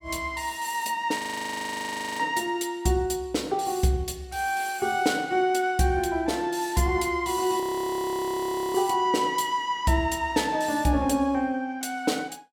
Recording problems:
frozen audio; at 1 s for 1 s and at 7.5 s for 1 s

